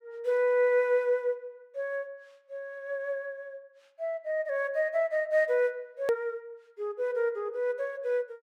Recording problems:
hard cut with a click; at 6 s

